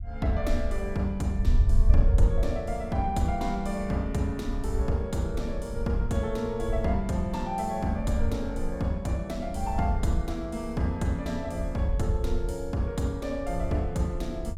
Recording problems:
low-frequency rumble; below 68 Hz, SNR 2 dB

